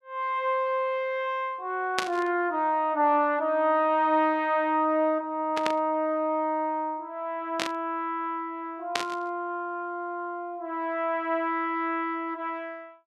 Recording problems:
burst of static; 4 times, first at 2 s; peak +4 dB vs average level

